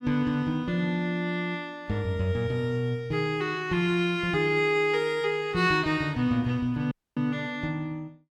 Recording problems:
dropout; at 7 s

